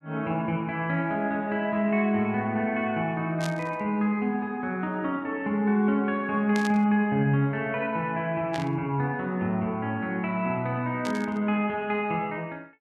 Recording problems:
burst of static; 4 times, first at 3.5 s; peak -5 dB vs average level

